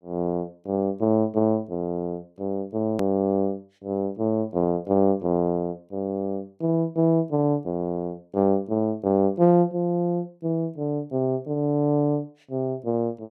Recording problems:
hard cut with a click; at 3 s

